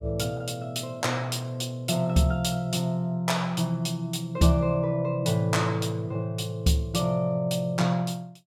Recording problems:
none

